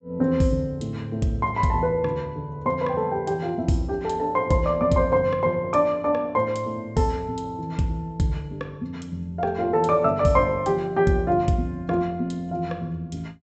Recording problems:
low-pass filter; nothing above 8 kHz

